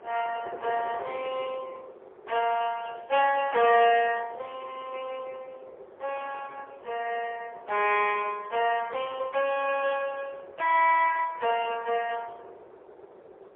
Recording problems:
phone line; 340 Hz to 3.3 kHz, AMR-NB, then MP3
wind on the microphone; below 630 Hz, SNR 19 dB

